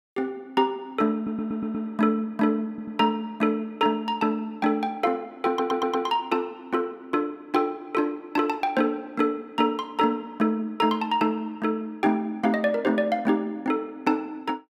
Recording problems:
audio stuttering; at 1 s, at 2.5 s and at 5.5 s

